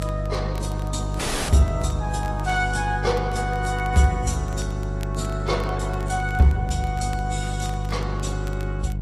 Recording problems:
codec artefacts; Opus, then AAC, log-spectral distance 3 dB, nothing above 11.3 kHz
hum; 50 Hz, harmonics up to 350 Hz, SNR 3 dB
crackling; vinyl, SNR 23 dB
audio cutting out; at 1 s

